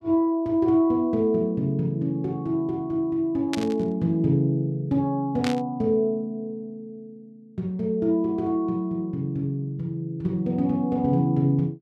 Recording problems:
burst of static; at 3.5 s and at 5.5 s; peak -2 dB vs average level

